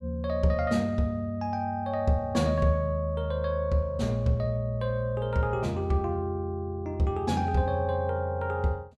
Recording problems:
none

